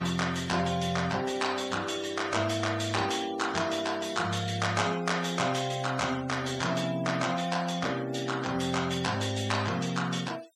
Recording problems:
noise reduction artefacts; signal-to-artefact ratio 17 dB

